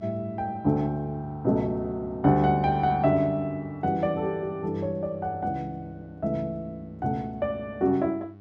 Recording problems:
electrical hum; 50 Hz, harmonics up to 1.1 kHz, SNR 21 dB

